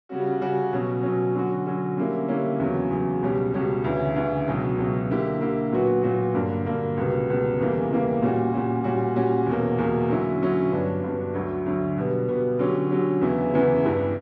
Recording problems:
none

